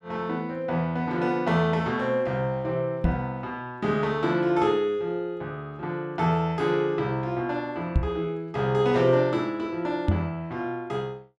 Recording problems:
microphone thump; at 3 s, at 8 s and at 10 s; peak +7 dB vs average level

